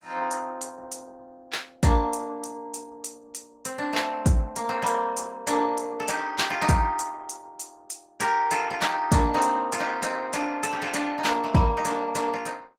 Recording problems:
lossy codec; Opus, log-spectral distance 5 dB

